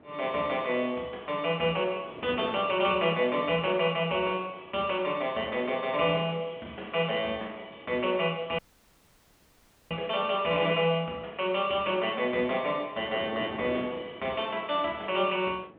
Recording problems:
phone line; 280 Hz to 3.4 kHz, G.726
wind noise; below 650 Hz, SNR 20 dB
audio cutting out; at 8.5 s for 1.5 s

